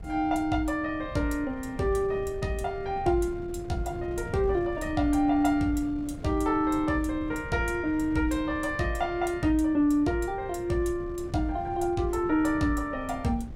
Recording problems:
wind on the microphone; below 170 Hz, SNR 14 dB

